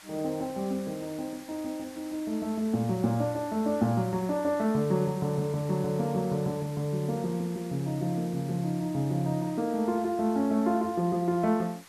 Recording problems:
background hiss; SNR 20 dB

